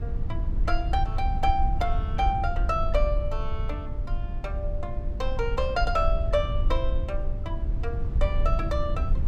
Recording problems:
low-frequency rumble; below 68 Hz, SNR -1 dB

